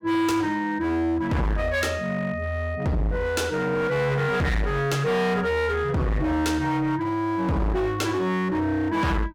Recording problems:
distorted audio; hard clipping, uneven, signal-to-distortion ratio 6 dB

